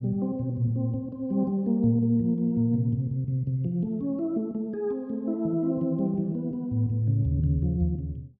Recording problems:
none

